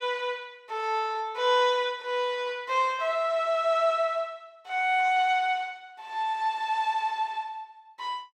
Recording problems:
none

